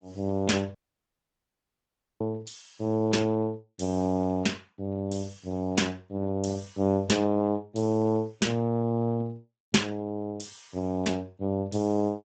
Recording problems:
lossy codec; Speex, log-spectral distance 4 dB, nothing above 7.8 kHz
audio cutting out; at 1 s for 1.5 s

